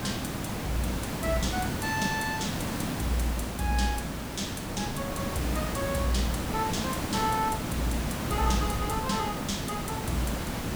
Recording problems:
hiss; slope -5 dB per octave, SNR 1 dB
wind on the microphone; below 630 Hz, SNR 13 dB

